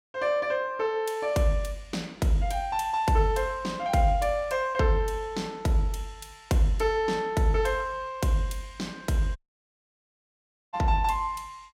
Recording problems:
audio cutting out; at 9.5 s for 1.5 s

